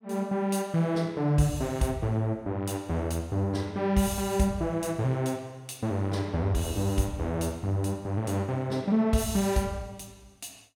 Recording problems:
none

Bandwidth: 17.5 kHz